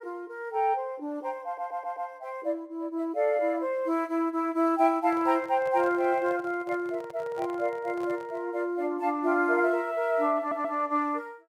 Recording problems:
audio stuttering; at 1.5 s and at 10 s
handling noise; from 5 to 8.5 s; peak -10 dB vs average level

